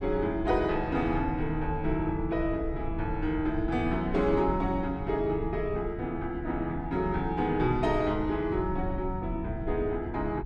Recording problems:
rumble; below 98 Hz, SNR 9 dB

